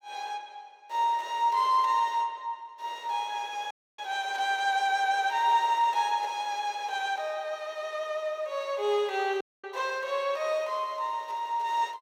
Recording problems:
audio cutting out; at 3.5 s and at 9.5 s

